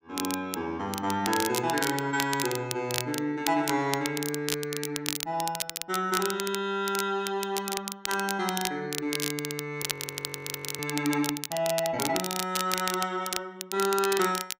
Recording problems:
crackle; vinyl, SNR 4 dB
frozen audio; at 10 s for 1 s

